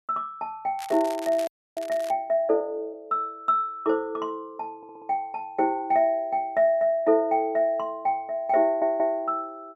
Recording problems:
crackling; from 1 to 2 s; loose cable, SNR 19 dB
audio freezing; at 1.5 s
stutter; at 5 s and at 8.5 s

